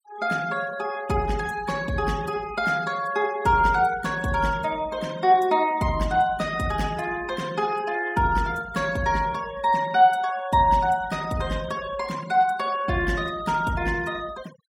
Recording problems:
denoising artefacts; signal-to-artefact ratio 19 dB

